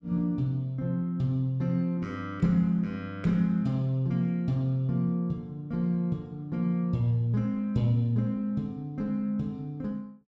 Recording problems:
none

